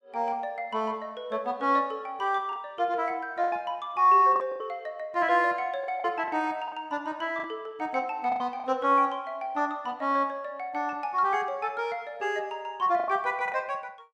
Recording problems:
lost packets; 5% of the sound replaced, filled with the last packet

